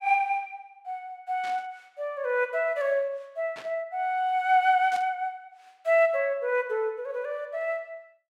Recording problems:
static burst; at 1.5 s, at 3.5 s and at 5 s; peak -11 dB vs average level

